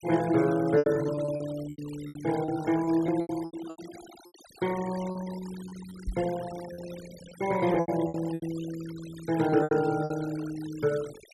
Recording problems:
noise reduction artefacts; signal-to-artefact ratio 17 dB
lost packets; 11% of the sound replaced, filled with repeated pitch periods
microphone thump; at 6 s; peak -2 dB vs average level

